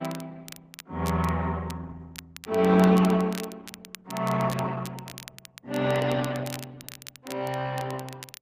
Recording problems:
lossy codec; Opus, log-spectral distance 3 dB
crackle; vinyl, SNR 17 dB

